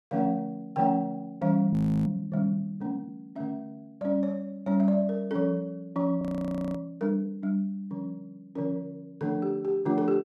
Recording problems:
audio freezing; at 1.5 s and at 6 s for 0.5 s

